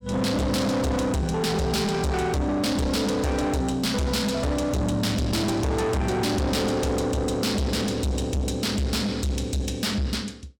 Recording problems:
distortion; soft clipping, signal-to-distortion ratio 6 dB

